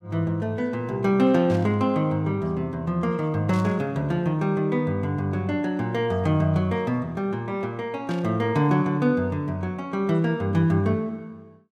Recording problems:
burst of static; at 1.5 s, at 3.5 s and at 8 s; peak -13 dB vs average level

